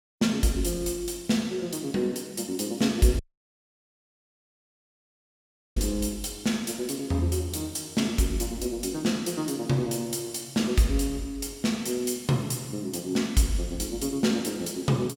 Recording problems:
audio cutting out; at 3 s for 2.5 s

